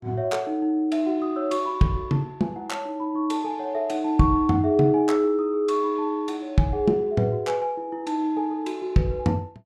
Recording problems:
none

